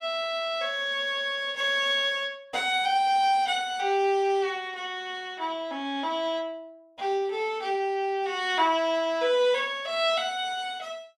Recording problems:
none

